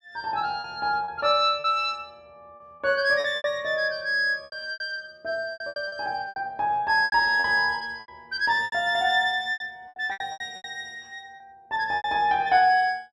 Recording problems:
packet loss; 13% of the sound replaced, filled with repeated pitch periods

